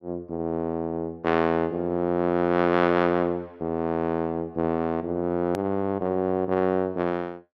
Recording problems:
edit click; at 5.5 s

